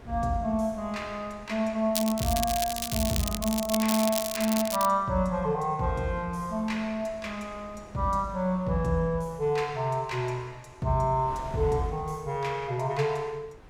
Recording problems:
wind on the microphone; below 710 Hz, SNR 21 dB
crackle; from 2 to 5 s; loose cable, SNR 4 dB

